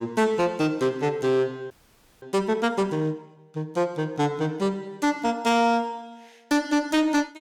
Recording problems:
distorted audio; soft clipping, signal-to-distortion ratio 10 dB
frozen audio; at 1.5 s for 0.5 s

